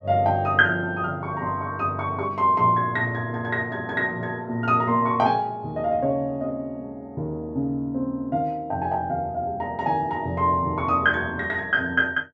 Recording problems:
none

